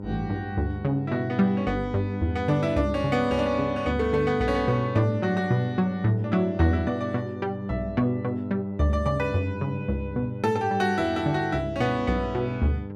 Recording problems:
electrical hum; 50 Hz, harmonics up to 1 kHz, SNR 11 dB

